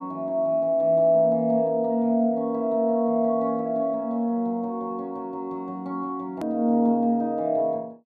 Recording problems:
click at an edit; at 6.5 s

